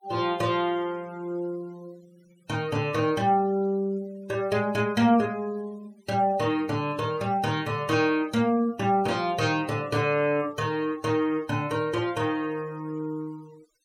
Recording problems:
noise reduction artefacts; signal-to-artefact ratio 25 dB

